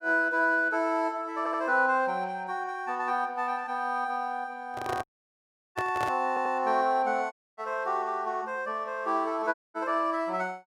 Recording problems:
audio stuttering; at 1.5 s and at 6.5 s
microphone handling noise; from 4.5 to 6 s; peak -2 dB vs average level
dropout; at 5 s for 0.5 s, at 7.5 s and at 9.5 s

